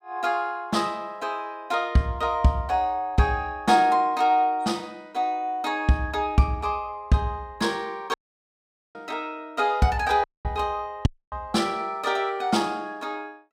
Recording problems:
audio cutting out; at 8 s for 1 s, at 10 s and at 11 s

